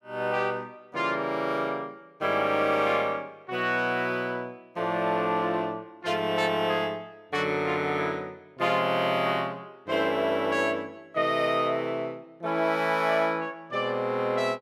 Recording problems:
none

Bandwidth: 14 kHz